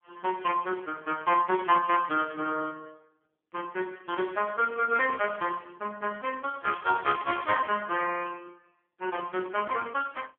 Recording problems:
phone line; 240 Hz to 2.8 kHz, AMR-NB

